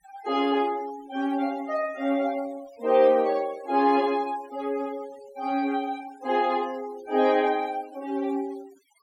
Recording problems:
denoising artefacts; signal-to-artefact ratio 22 dB

